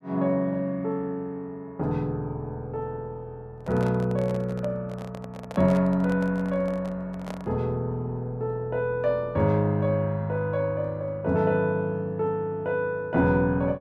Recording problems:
microphone handling noise; from 3.5 to 7.5 s; peak -6 dB vs average level

